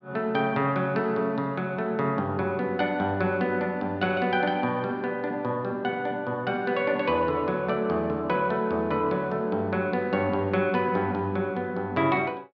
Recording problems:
none

